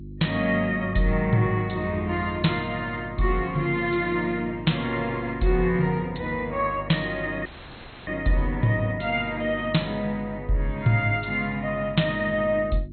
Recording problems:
codec artefacts; MP2, log-spectral distance 4 dB, nothing above 4.2 kHz
hum; 50 Hz, harmonics up to 350 Hz, SNR 15 dB
dropout; at 7.5 s for 0.5 s

